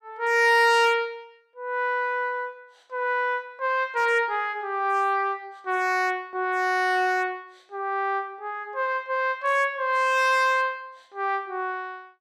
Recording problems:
distortion; hard clipping, signal-to-distortion ratio 11 dB

